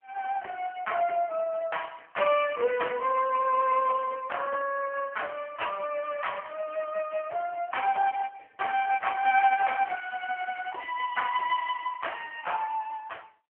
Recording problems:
phone line; 340 Hz to 2.9 kHz, AMR-NB

